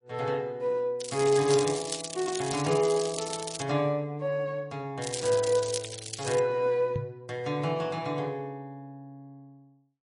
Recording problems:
lossy codec; MP3, then MP3, log-spectral distance 6 dB
crackle; from 1 to 3.5 s and from 5 to 6.5 s; loose cable, SNR 8 dB
microphone thump; at 7 s; peak -1 dB vs average level

